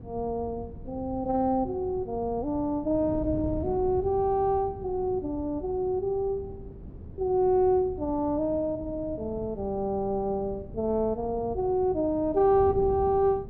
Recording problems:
wind on the microphone; below 200 Hz, SNR 14 dB

